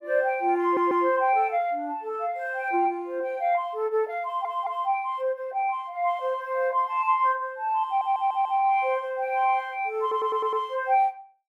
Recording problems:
audio stuttering; 4 times, first at 0.5 s

